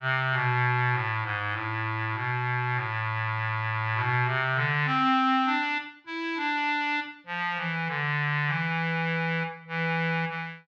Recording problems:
none

